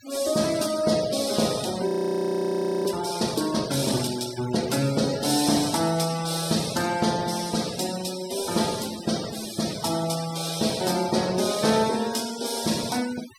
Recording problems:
denoising artefacts; signal-to-artefact ratio 13 dB
frozen audio; at 2 s for 1 s

